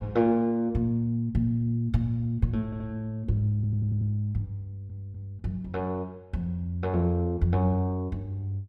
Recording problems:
stutter; at 2.5 s, at 3.5 s and at 4.5 s

